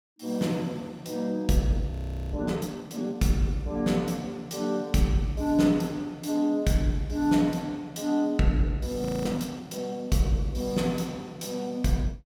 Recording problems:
audio freezing; at 2 s and at 9 s

